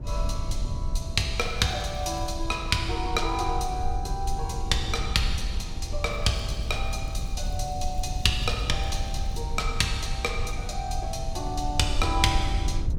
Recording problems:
rumble; below 76 Hz, SNR 4 dB
crackling; at 1.5 s, from 6 to 7.5 s and from 7.5 to 9.5 s; loose cable, SNR 30 dB

